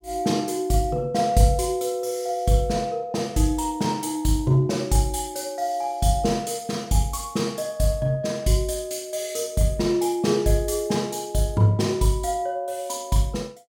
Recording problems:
none

